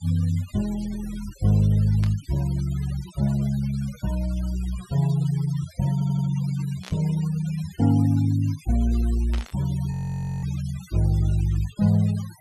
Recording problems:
noise reduction artefacts; signal-to-artefact ratio 20 dB
static burst; at 2 s, at 7 s and at 9.5 s; peak -10 dB vs average level
audio stuttering; at 6 s
frozen audio; at 10 s for 0.5 s

